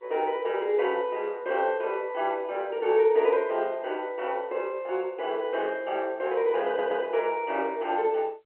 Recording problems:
telephone audio; 300 Hz to 3.7 kHz, G.711
audio stuttering; at 6.5 s

